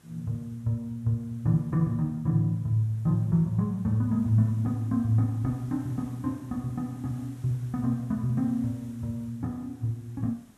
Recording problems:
hiss; slope -4 dB per octave, SNR 28 dB

